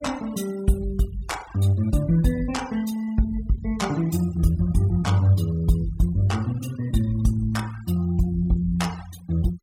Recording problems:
denoising artefacts; signal-to-artefact ratio 20 dB

